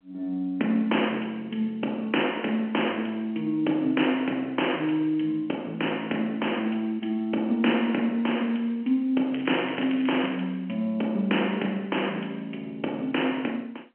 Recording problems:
phone line; 240 Hz to 3.2 kHz, G.711
crackling; from 9.5 to 10 s; loose cable, SNR 14 dB

